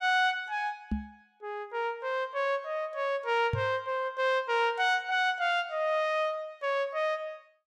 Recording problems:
knock on the microphone; at 1 s and at 3.5 s; peak +2 dB vs average level

